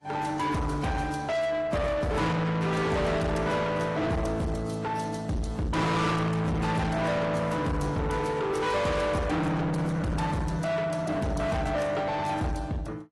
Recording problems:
lossy compression; AAC, log-spectral distance 3 dB, nothing above 11.3 kHz
distortion; soft clipping, signal-to-distortion ratio 6 dB

